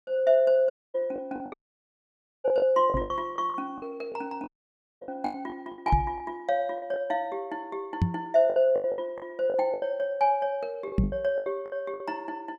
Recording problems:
lost packets; 13% of the sound replaced, filled with the last packet
audio cutting out; at 0.5 s, at 1.5 s for 1 s and at 4.5 s for 0.5 s
knock on the microphone; 4 times, first at 3 s; peak +7 dB vs average level

